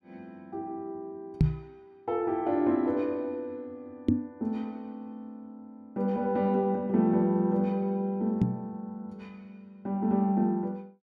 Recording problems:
microphone bump; at 1.5 s, at 4 s and at 8.5 s; peak +9 dB vs average level

